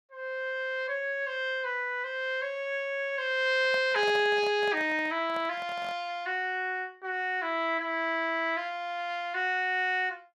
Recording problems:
microphone handling noise; from 3.5 to 6 s; peak -8 dB vs average level

